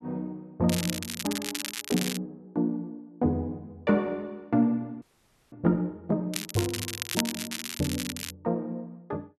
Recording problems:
crackle; from 0.5 to 2 s and from 6.5 to 8.5 s; loose cable, SNR 3 dB
frozen audio; at 5 s for 0.5 s

